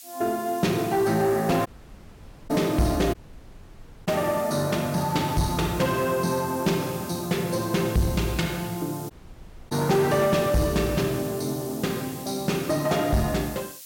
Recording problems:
distorted audio; soft clipping, signal-to-distortion ratio 11 dB
hiss; SNR 15 dB
audio cutting out; at 1.5 s for 1 s, at 3 s for 1 s and at 9 s for 0.5 s

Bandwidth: 16.5 kHz